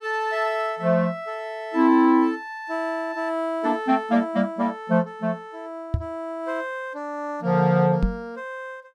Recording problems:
microphone thump; at 6 s and at 8 s; peak +3 dB vs average level

